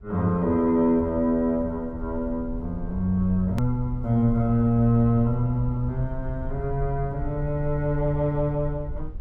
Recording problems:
rumble; below 70 Hz, SNR 12 dB
hard cut with a click; at 3.5 s

